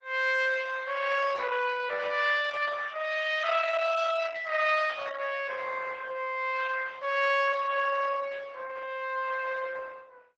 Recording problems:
lossy codec; Opus, log-spectral distance 5 dB, nothing above 7.3 kHz

